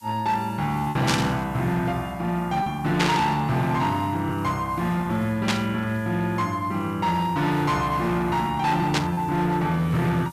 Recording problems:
distortion; hard clipping, signal-to-distortion ratio 12 dB
hiss; SNR 27 dB
packet loss; 1.7% of the sound replaced, filled with repeated pitch periods
static burst; 4 times, first at 1 s; peak +4 dB vs average level

